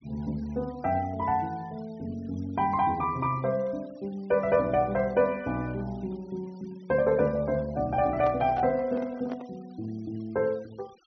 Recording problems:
treble cut off; nothing above 6 kHz
noise reduction artefacts; signal-to-artefact ratio 27 dB
handling noise; from 8 to 9.5 s; peak -7 dB vs average level

